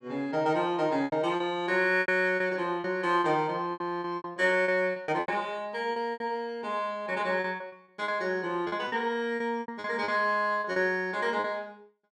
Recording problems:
lost packets; 12% of the sound replaced, filled with repeated pitch periods

